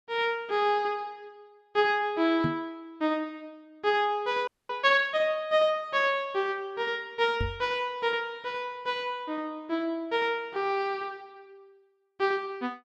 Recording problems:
microphone bump; at 2.5 s and at 7.5 s; peak +2 dB vs average level
audio freezing; at 4.5 s

